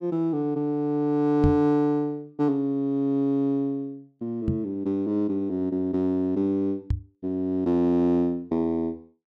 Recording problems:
microphone bump; at 1.5 s, at 4.5 s and at 7 s; peak +4 dB vs average level

